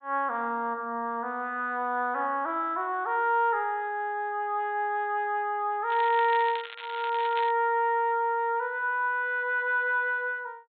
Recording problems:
low-pass filter; nothing above 4 kHz
crackling; from 6 to 7.5 s; loose cable, SNR 14 dB

